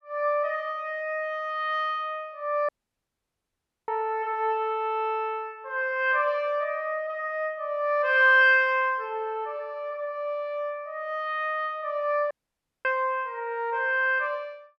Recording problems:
dropout; at 2.5 s for 1 s and at 12 s for 0.5 s

